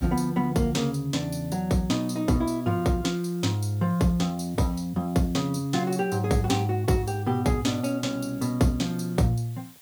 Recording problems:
hiss; slope +1 dB per octave, SNR 24 dB

